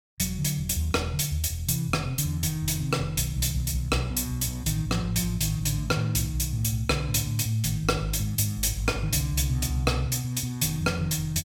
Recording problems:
none

